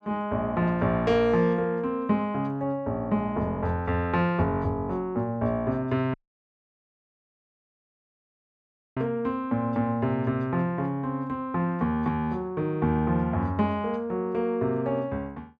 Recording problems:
dropout; at 6 s for 3 s

